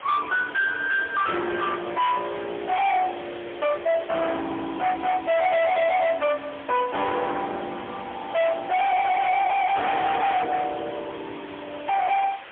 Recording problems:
telephone audio; 840 Hz to 3.8 kHz, AMR-NB, then MP3
distortion; hard clipping, signal-to-distortion ratio 5 dB
background hiss; SNR 17 dB

